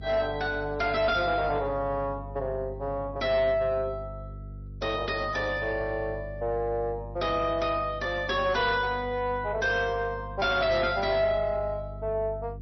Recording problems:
lossy compression; MP3, log-spectral distance 2 dB, nothing above 5.8 kHz
distorted audio; soft clipping, signal-to-distortion ratio 10 dB
hum; 50 Hz, harmonics up to 450 Hz, SNR 13 dB

